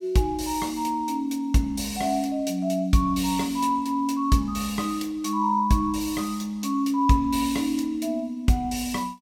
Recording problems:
none

